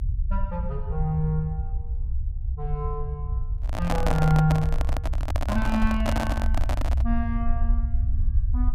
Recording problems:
rumble; below 66 Hz, SNR 0 dB
handling noise; from 3.5 to 7 s; peak +5 dB vs average level

